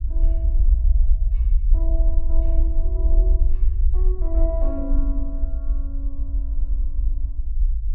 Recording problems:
low-frequency rumble; below 50 Hz, SNR -13 dB

